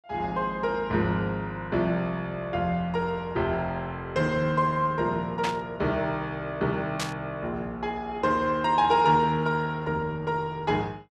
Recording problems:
burst of static; at 5.5 s and at 7 s; peak 0 dB vs average level

